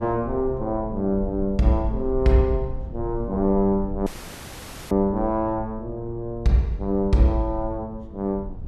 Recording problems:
rumble; below 74 Hz, SNR 13 dB
audio cutting out; at 4 s for 1 s

